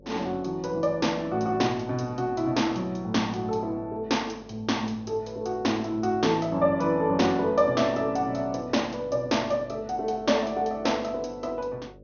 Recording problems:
low-pass filter; nothing above 6.5 kHz
electrical hum; 50 Hz, harmonics up to 600 Hz, SNR 24 dB

